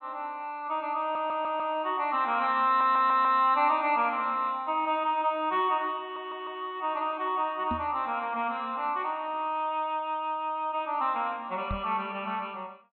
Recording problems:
low-pass filter; nothing above 4.1 kHz
audio stuttering; at 1 s, at 2.5 s and at 6 s
knock on the microphone; at 7.5 s and at 12 s; peak -3 dB vs average level

